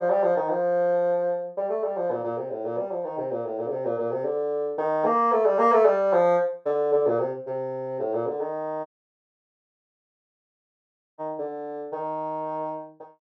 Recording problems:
audio cutting out; at 9 s for 2.5 s

